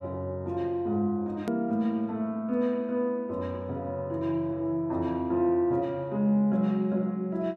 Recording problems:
hard cut with a click; at 1.5 s

